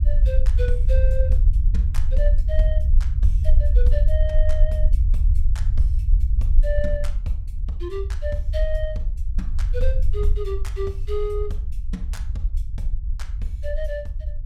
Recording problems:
rumble; below 58 Hz, SNR -9 dB

